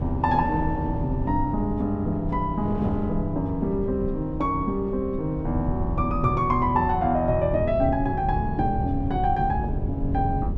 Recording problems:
low-frequency rumble; below 140 Hz, SNR 7 dB
wind on the microphone; below 380 Hz, SNR 13 dB

